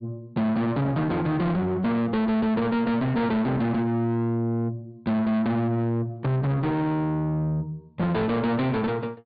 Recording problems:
treble missing; nothing above 4.7 kHz
distorted audio; soft clipping, signal-to-distortion ratio 7 dB

